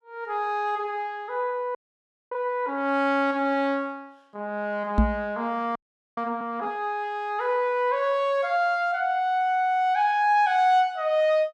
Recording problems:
audio freezing; at 2 s for 0.5 s and at 6 s
knock on the microphone; at 5 s; peak +7 dB vs average level

